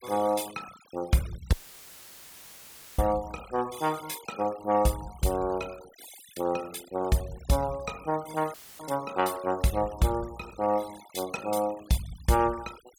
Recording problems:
noise reduction artefacts; signal-to-artefact ratio 18 dB
dropout; at 1.5 s for 1.5 s and at 8.5 s; filled with static

